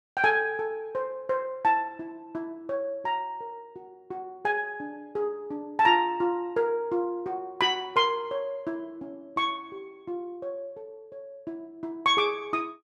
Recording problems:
none

